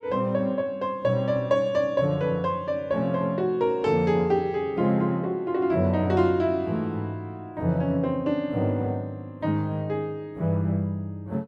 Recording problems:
none

